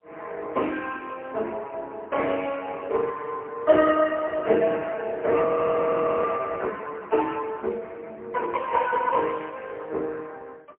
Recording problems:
telephone audio; 260 Hz to 2.6 kHz, AMR-NB, then MP3
audio freezing; at 5.5 s for 1 s

